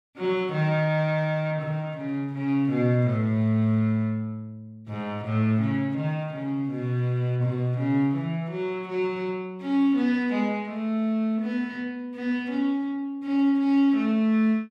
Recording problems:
none

